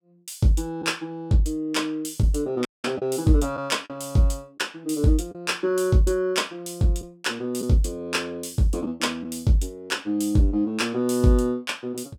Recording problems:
packet loss; 1.6% of the sound replaced, filled with the last packet
dropout; at 2.5 s

